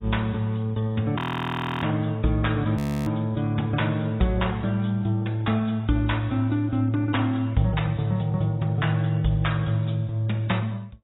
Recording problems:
lossy compression; AAC, log-spectral distance 3 dB, nothing above 16 kHz
audio freezing; at 1 s for 0.5 s and at 3 s

